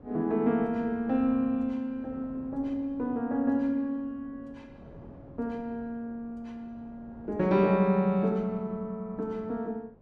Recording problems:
wind on the microphone; below 430 Hz, SNR 21 dB

